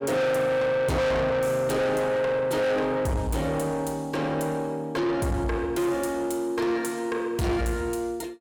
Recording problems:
distortion; soft clipping, signal-to-distortion ratio 6 dB

